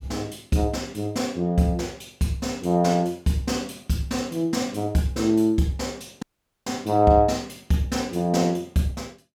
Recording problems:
audio cutting out; at 6 s

